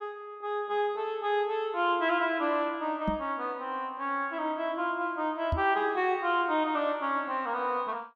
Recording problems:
microphone bump; at 3 s and at 5.5 s; peak +2 dB vs average level

